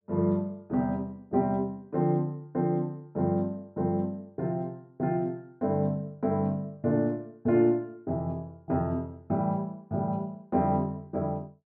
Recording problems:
none

